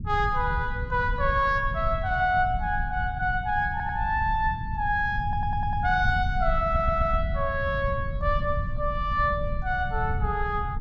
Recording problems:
low-frequency rumble; below 100 Hz, SNR 6 dB
stutter; at 3.5 s, at 5 s and at 6.5 s

